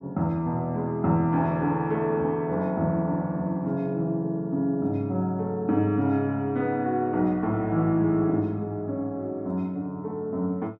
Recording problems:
none

